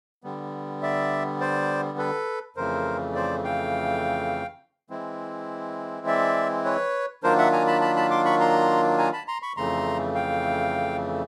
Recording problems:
none

